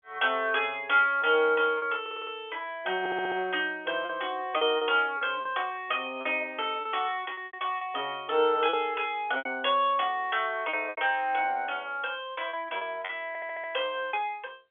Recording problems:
telephone audio; 320 Hz to 3.4 kHz, G.711
packet loss; 7% of the sound replaced, filled with repeated pitch periods
audio stuttering; at 2 s, at 3 s and at 13 s

